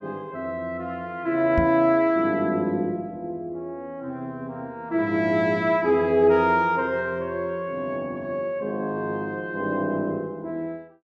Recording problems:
microphone thump; at 1.5 s; peak +3 dB vs average level

